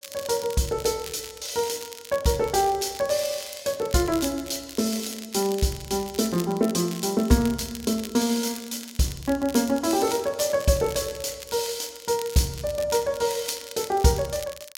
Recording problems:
crackling; vinyl, SNR 15 dB

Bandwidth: 16 kHz